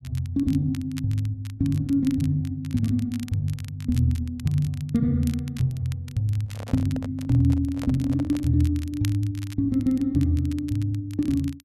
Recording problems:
crackling; vinyl, SNR 22 dB
microphone handling noise; from 6.5 to 8.5 s; peak -8 dB vs average level

